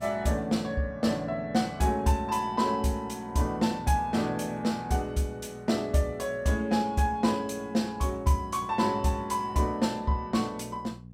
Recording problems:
electrical hum; 60 Hz, harmonics up to 480 Hz, SNR 20 dB

